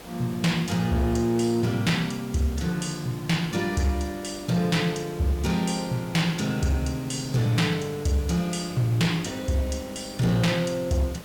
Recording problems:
distortion; hard clipping, signal-to-distortion ratio 12 dB
hum; 50 Hz, harmonics up to 500 Hz, SNR 25 dB
background hiss; slope -4 dB per octave, SNR 17 dB

